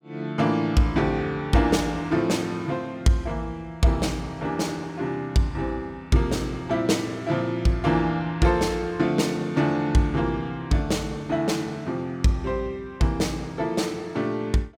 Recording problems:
none

